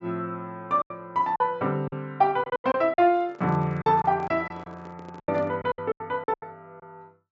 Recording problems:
treble missing; nothing above 8 kHz
lost packets; 12% of the sound replaced, filled with silence
handling noise; from 3 to 5.5 s; peak -10 dB vs average level

